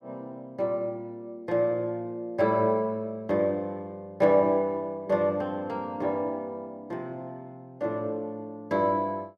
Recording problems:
none

